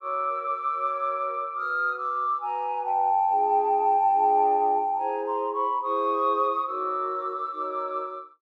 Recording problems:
none

